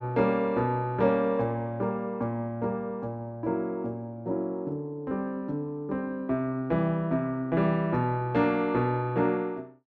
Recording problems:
none

